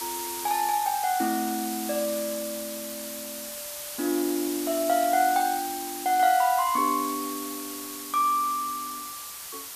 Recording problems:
background hiss; slope +2 dB per octave, SNR 8 dB

